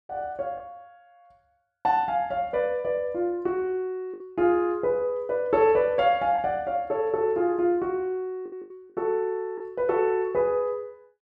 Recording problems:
packet loss; 3% of the sound replaced, filled with the last packet

